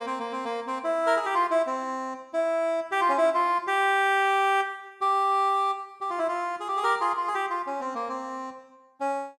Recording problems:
none

